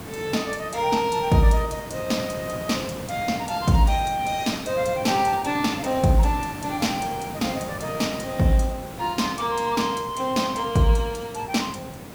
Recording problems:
background hiss; slope -6 dB per octave, SNR 12 dB

